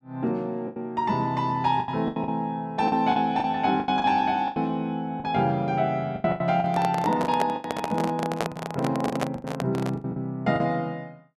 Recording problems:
packet loss; 12% of the sound replaced, filled with the last packet
microphone handling noise; from 6.5 to 10 s; peak +3 dB vs average level

